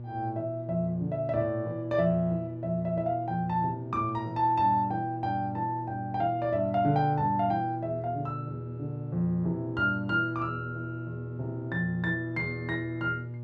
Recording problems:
mains hum; 60 Hz, harmonics up to 600 Hz, SNR 9 dB

